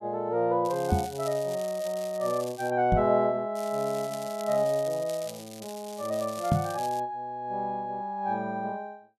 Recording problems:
crackle; from 0.5 to 2.5 s and from 3.5 to 7 s; loose cable, SNR 16 dB
microphone bump; at 1 s, at 3 s and at 6.5 s; peak +8 dB vs average level

